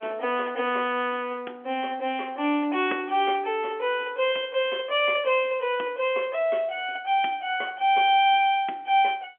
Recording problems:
phone line; 260 Hz to 3.4 kHz, G.711

